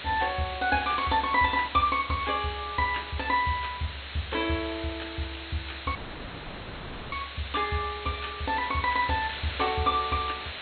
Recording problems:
treble missing; nothing above 4.3 kHz
hiss; SNR 9 dB
dropout; at 6 s for 1 s

